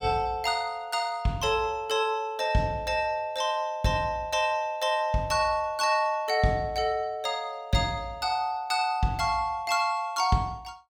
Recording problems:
none

